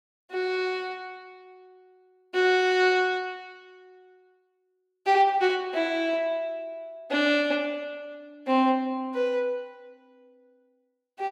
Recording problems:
none

